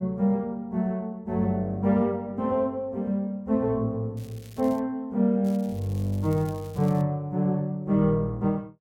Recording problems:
crackling; at 4 s and from 5.5 to 7 s; loose cable, SNR 25 dB

